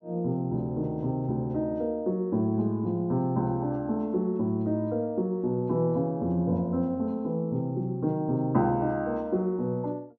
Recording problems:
treble missing; nothing above 8 kHz

